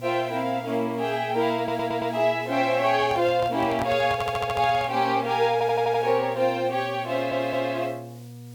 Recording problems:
hum; 60 Hz, harmonics up to 720 Hz, SNR 17 dB
background hiss; slope +3 dB per octave, SNR 28 dB
stutter; 4 times, first at 1.5 s
handling noise; from 3 to 5 s; peak -4 dB vs average level

